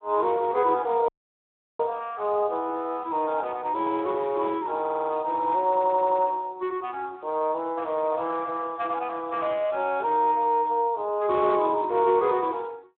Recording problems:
phone line; 320 Hz to 3.7 kHz, Speex
dropout; at 1 s for 0.5 s
stutter; at 5 s and at 5.5 s

